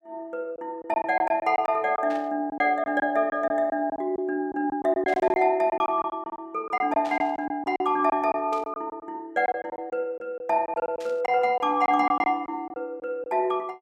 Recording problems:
packet loss; 11% of the sound replaced, filled with silence
static burst; 5 times, first at 2 s; peak -13 dB vs average level

